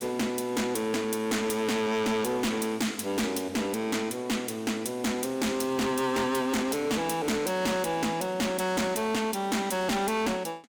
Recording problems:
distortion; hard clipping, signal-to-distortion ratio 7 dB

